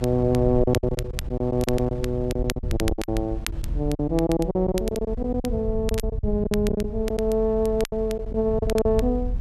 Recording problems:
rumble; below 86 Hz, SNR 8 dB
wind noise; below 200 Hz, SNR 20 dB
crackling; vinyl, SNR 14 dB
lost packets; 14% of the sound replaced, filled with silence

